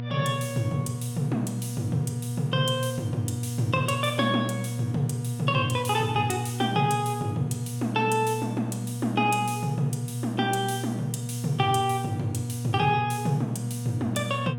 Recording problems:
electrical hum; 60 Hz, harmonics up to 960 Hz, SNR 5 dB

